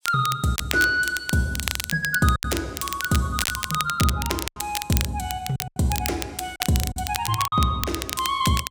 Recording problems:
crackle; vinyl, SNR 5 dB
packet loss; 6% of the sound replaced, filled with silence

